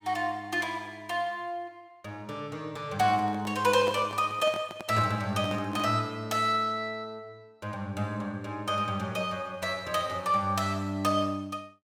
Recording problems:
microphone handling noise; from 3 to 6 s; peak -4 dB vs average level

